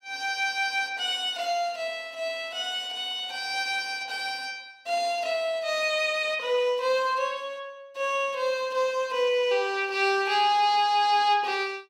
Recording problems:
none

